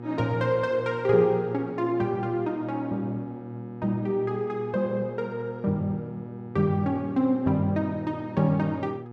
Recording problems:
electrical hum; 60 Hz, harmonics up to 1.3 kHz, SNR 13 dB

